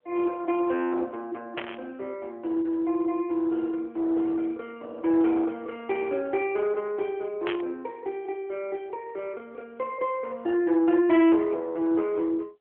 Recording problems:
telephone audio; 280 Hz to 3.6 kHz, AMR-NB
distortion; soft clipping, signal-to-distortion ratio 13 dB
static burst; at 1.5 s and at 7.5 s; peak -2 dB vs average level

